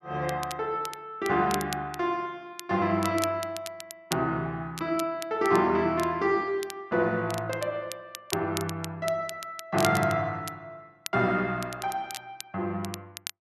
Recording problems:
crackle; vinyl, SNR 12 dB

